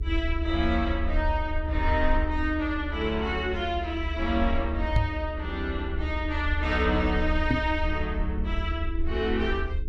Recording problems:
hum; 60 Hz, harmonics up to 420 Hz, SNR 18 dB
low-frequency rumble; below 74 Hz, SNR 3 dB
knock on the microphone; at 5 s and at 7.5 s; peak +8 dB vs average level

